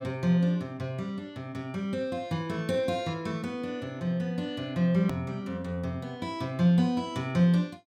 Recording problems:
edit click; at 5 s

